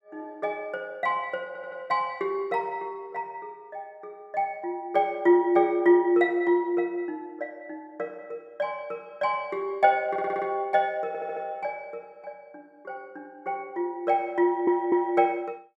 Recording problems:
audio stuttering; 4 times, first at 1.5 s

